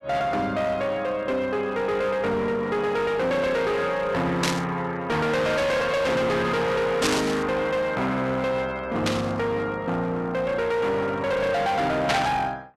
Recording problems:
distorted audio; hard clipping, uneven, signal-to-distortion ratio 7 dB
burst of static; 4 times, first at 4.5 s; peak +4 dB vs average level

